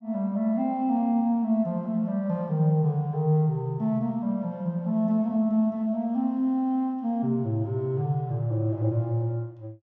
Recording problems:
none

